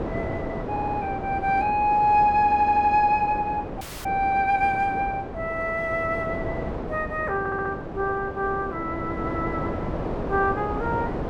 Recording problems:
wind on the microphone; below 640 Hz, SNR 8 dB
stutter; at 0.5 s, at 2.5 s and at 7.5 s
frozen audio; at 4 s

